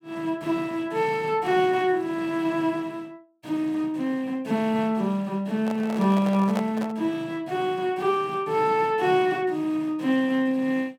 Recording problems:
microphone handling noise; from 5.5 to 7 s; peak -2 dB vs average level

